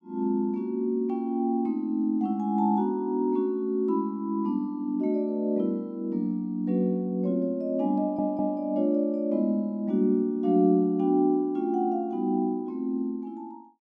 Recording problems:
audio stuttering; at 8 s

